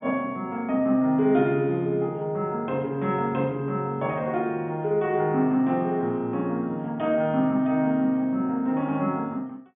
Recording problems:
treble missing; nothing above 3.6 kHz

